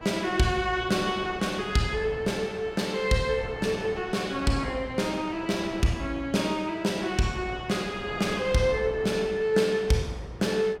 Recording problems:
wind on the microphone; below 830 Hz, SNR 15 dB

